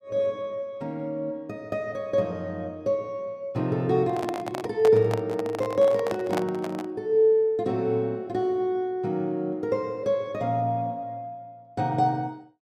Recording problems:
microphone handling noise; from 4 to 7 s; peak +1 dB vs average level

